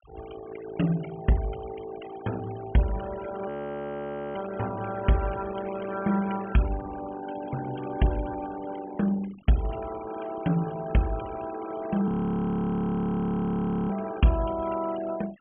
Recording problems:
treble cut off; nothing above 3.3 kHz
denoising artefacts; signal-to-artefact ratio 16 dB
audio freezing; at 3.5 s for 1 s and at 12 s for 2 s

